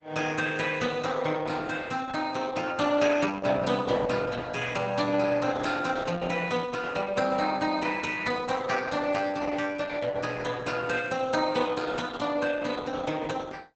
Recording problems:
codec artefacts; Opus, log-spectral distance 5 dB, nothing above 7.8 kHz

